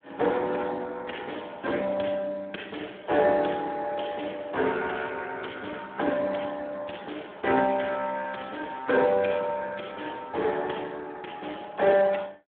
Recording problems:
telephone audio; 240 Hz to 3.5 kHz, Speex

